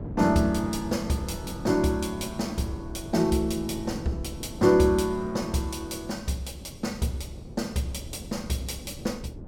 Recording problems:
wind noise; below 300 Hz, SNR 13 dB

